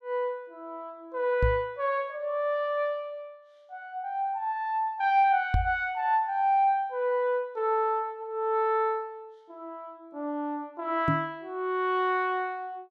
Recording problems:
knock on the microphone; at 1.5 s, at 5.5 s and at 11 s; peak +5 dB vs average level

